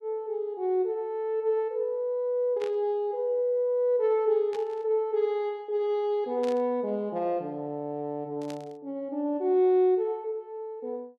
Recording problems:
burst of static; 4 times, first at 2.5 s; peak -12 dB vs average level

